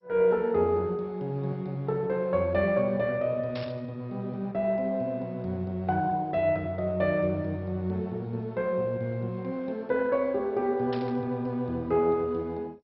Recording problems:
codec artefacts; MP2, log-spectral distance 2 dB, nothing above 4.5 kHz
burst of static; at 3.5 s and at 11 s; peak -9 dB vs average level

